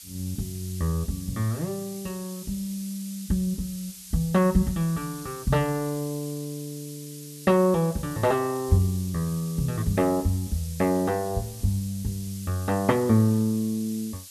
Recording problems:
hiss; slope +6 dB per octave, SNR 15 dB

